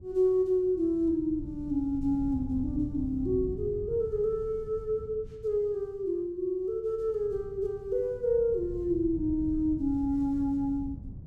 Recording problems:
wind noise; below 140 Hz, SNR 13 dB

